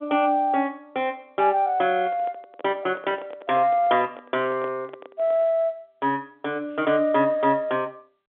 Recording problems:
phone line; 220 Hz to 3.7 kHz, G.711
microphone handling noise; from 2 to 5.5 s; peak -10 dB vs average level

